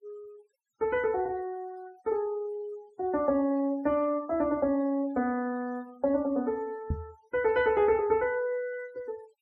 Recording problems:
noise reduction artefacts; signal-to-artefact ratio 25 dB
knock on the microphone; at 7 s; peak +2 dB vs average level

